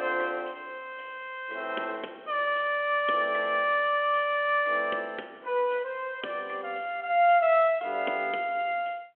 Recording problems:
phone line; 260 Hz to 3.3 kHz, G.726

